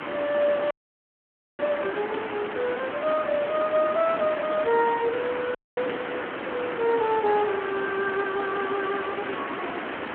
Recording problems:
phone line; 260 Hz to 3.5 kHz, Speex
hiss; SNR 5 dB
wind on the microphone; below 680 Hz, SNR 22 dB
dropout; at 0.5 s for 1 s and at 5.5 s

